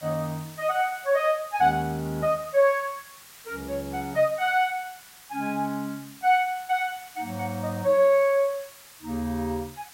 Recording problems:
background hiss; SNR 20 dB

